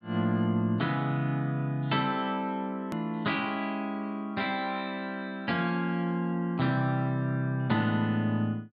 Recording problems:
low-pass filter; nothing above 5 kHz
edit click; at 3 s

